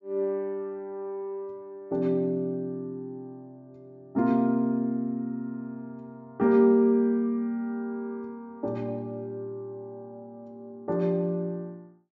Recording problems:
low-pass filter; nothing above 8 kHz

